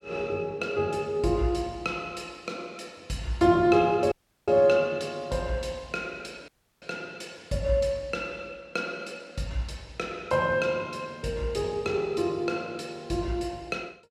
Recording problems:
dropout; at 4 s and at 6.5 s

